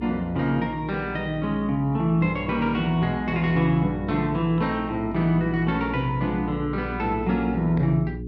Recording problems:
hum; 60 Hz, harmonics up to 420 Hz, SNR 11 dB

